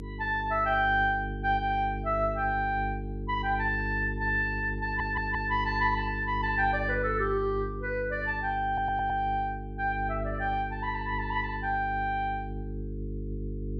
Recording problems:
hum; 50 Hz, harmonics up to 450 Hz, SNR 7 dB
audio stuttering; at 5 s and at 8.5 s

